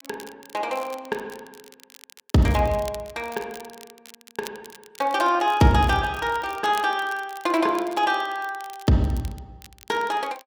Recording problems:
crackle; vinyl, SNR 22 dB

